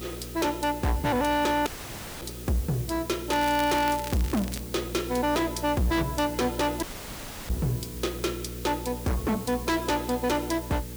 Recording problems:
distorted audio; hard clipping, signal-to-distortion ratio 6 dB
electrical hum; 60 Hz, harmonics up to 480 Hz, SNR 12 dB
background hiss; slope 0 dB per octave, SNR 14 dB
audio cutting out; at 1.5 s for 0.5 s and at 7 s for 0.5 s
crackling; from 3.5 to 4.5 s; loose cable, SNR 13 dB

